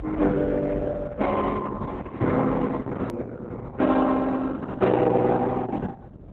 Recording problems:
codec artefacts; Opus, then Opus, log-spectral distance 4 dB, nothing above 13.1 kHz
rumble; below 160 Hz, strongest tone 46 Hz, SNR 15 dB
click at an edit; at 3 s

